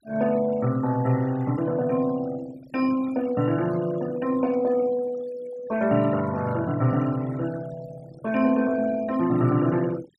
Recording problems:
denoising artefacts; signal-to-artefact ratio 20 dB

